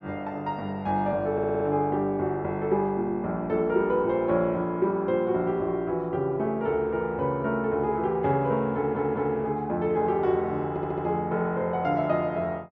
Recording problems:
audio stuttering; at 1.5 s, at 9 s and at 11 s

